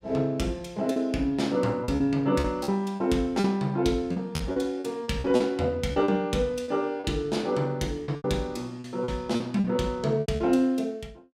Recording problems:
lost packets; 10% of the sound replaced, filled with repeated pitch periods

